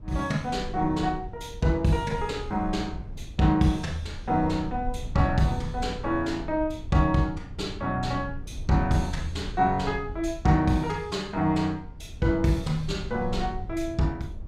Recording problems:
low-frequency rumble; below 90 Hz, SNR 13 dB

